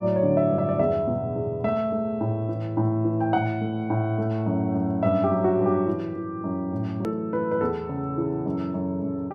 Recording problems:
click at an edit; at 7 s

